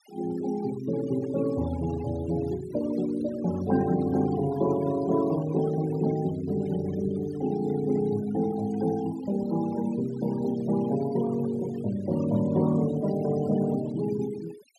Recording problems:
denoising artefacts; signal-to-artefact ratio 17 dB

